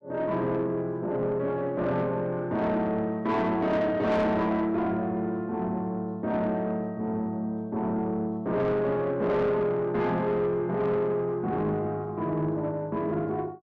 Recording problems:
distorted audio; soft clipping, signal-to-distortion ratio 11 dB

